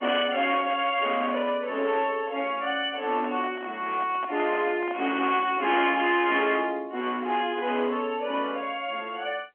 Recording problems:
telephone audio; 240 Hz to 3.3 kHz, G.711
distortion; hard clipping, uneven, signal-to-distortion ratio 11 dB
microphone handling noise; from 3 to 5 s; peak -8 dB vs average level

